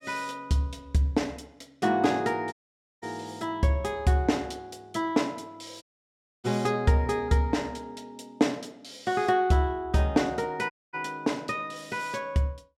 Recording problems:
audio cutting out; at 2.5 s, at 6 s for 0.5 s and at 11 s

